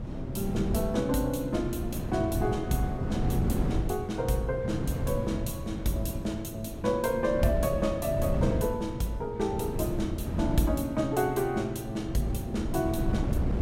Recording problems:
wind noise; below 230 Hz, SNR 3 dB

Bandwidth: 16 kHz